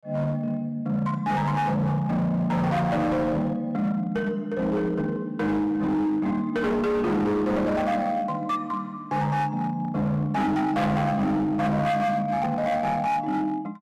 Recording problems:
distortion; hard clipping, signal-to-distortion ratio 8 dB

